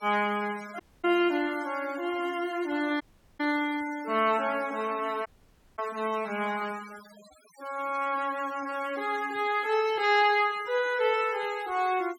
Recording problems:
denoising artefacts; signal-to-artefact ratio 19 dB
audio cutting out; at 1 s, at 3 s and at 5.5 s for 0.5 s

